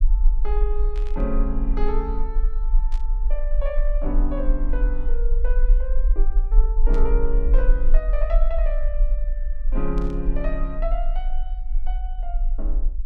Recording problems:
low-frequency rumble; below 38 Hz, strongest tone 20 Hz, SNR -7 dB
burst of static; 4 times, first at 1 s; peak -9 dB vs average level

